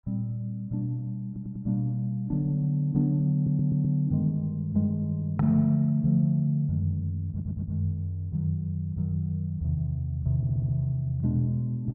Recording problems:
stutter; 4 times, first at 1.5 s

